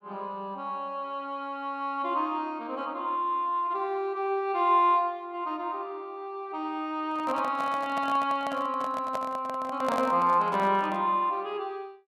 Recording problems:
microphone handling noise; from 7 to 11 s; peak -1 dB vs average level

